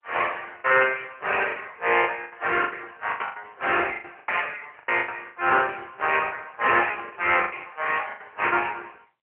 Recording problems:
telephone audio; 300 Hz to 2.9 kHz, AMR-NB
packet loss; 13% of the sound replaced, filled with the last packet

